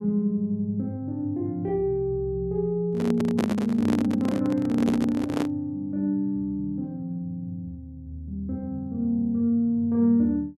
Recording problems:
microphone handling noise; from 3 to 5.5 s; peak +2 dB vs average level

